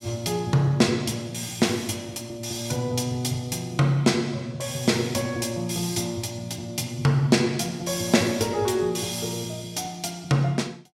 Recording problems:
none

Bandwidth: 16 kHz